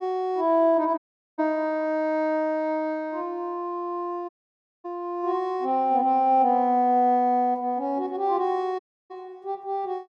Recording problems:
audio cutting out; at 1 s, at 4.5 s for 0.5 s and at 9 s

